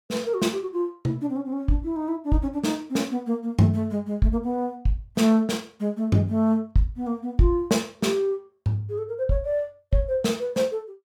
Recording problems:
none

